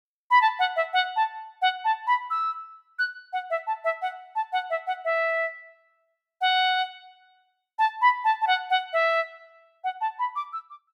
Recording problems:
none

